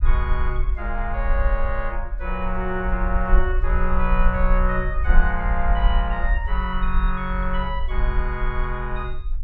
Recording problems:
rumble; below 48 Hz, SNR -2 dB

